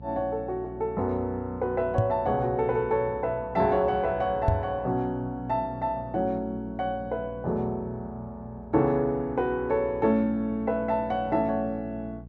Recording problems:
mains hum; 60 Hz, harmonics up to 480 Hz, SNR 16 dB
microphone thump; at 2 s and at 4.5 s; peak +6 dB vs average level

